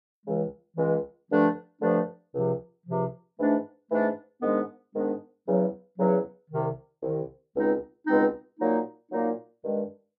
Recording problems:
none

